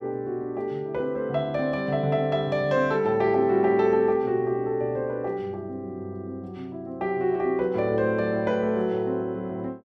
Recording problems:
none

